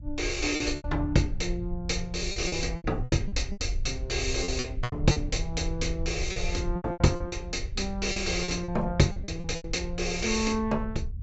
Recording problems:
treble missing; nothing above 7.8 kHz
rumble; below 72 Hz, SNR 7 dB
lost packets; 11% of the sound replaced, filled with repeated pitch periods

